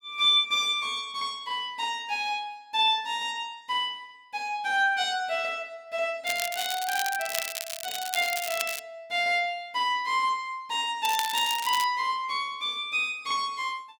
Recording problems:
crackle; from 6.5 to 9 s and at 11 s; loose cable, SNR 6 dB

